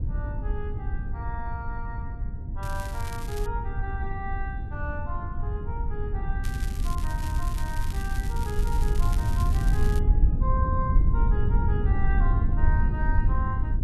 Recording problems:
low-frequency rumble; below 80 Hz, SNR -8 dB
crackling; at 2.5 s and from 6.5 to 10 s; loose cable, SNR 8 dB

